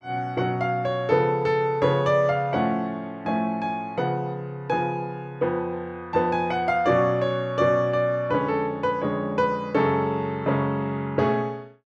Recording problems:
none

